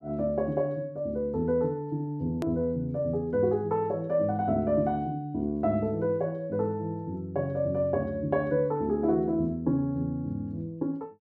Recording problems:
click at an edit; at 2.5 s

